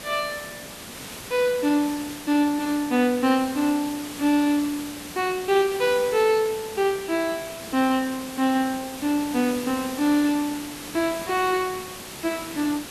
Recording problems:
hiss; slope -2 dB per octave, SNR 12 dB

